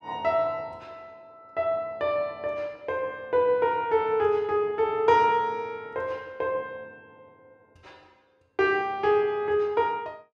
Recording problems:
none

